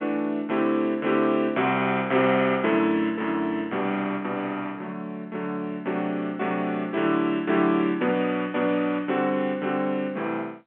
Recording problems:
telephone audio; 240 Hz to 3.4 kHz, G.711

